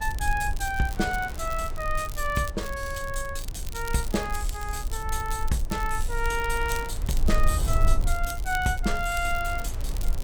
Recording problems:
rumble; below 54 Hz, strongest tone 20 Hz, SNR 3 dB
wind noise; below 1.2 kHz, SNR 19 dB
crackling; vinyl, SNR 14 dB

